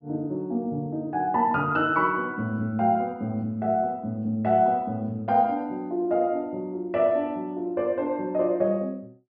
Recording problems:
treble missing; nothing above 5.5 kHz

